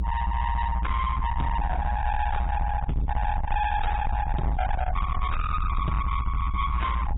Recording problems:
codec artefacts; AAC, log-spectral distance 2 dB, nothing above 3.8 kHz
distortion; soft clipping, signal-to-distortion ratio 7 dB
low-frequency rumble; below 180 Hz, SNR 1 dB

